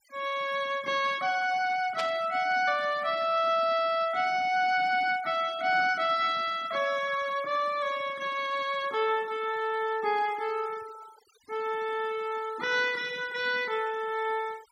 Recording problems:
denoising artefacts; signal-to-artefact ratio 20 dB
static burst; at 2 s; peak -3 dB vs average level

